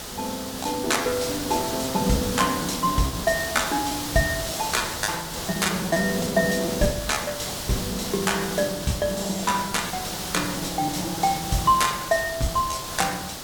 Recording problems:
background hiss; SNR 6 dB
packet loss; 14% of the sound replaced, filled with repeated pitch periods

